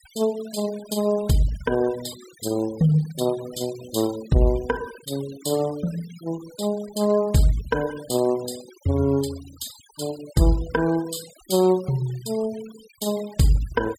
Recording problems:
denoising artefacts; signal-to-artefact ratio 18 dB

